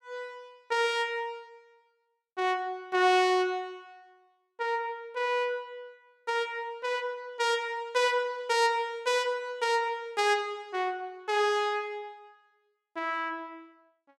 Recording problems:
none

